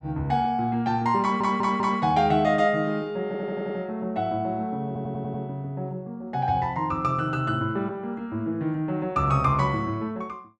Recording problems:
stutter; at 1 s, at 3.5 s and at 5 s

